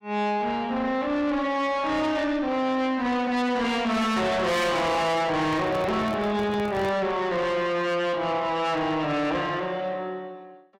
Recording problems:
distortion; soft clipping, signal-to-distortion ratio 7 dB
microphone handling noise; from 5.5 to 7 s; peak -2 dB vs average level

